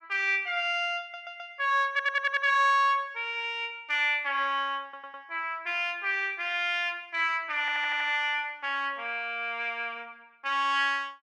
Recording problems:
stutter; 4 times, first at 1 s

